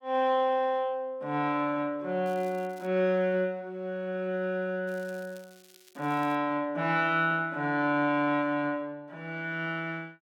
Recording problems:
crackling; at 2.5 s and from 5 to 6.5 s; loose cable, SNR 27 dB

